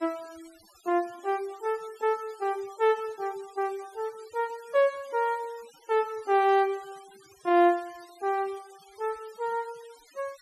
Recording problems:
denoising artefacts; signal-to-artefact ratio 24 dB

